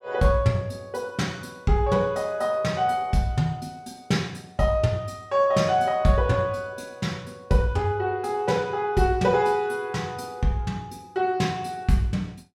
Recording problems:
none

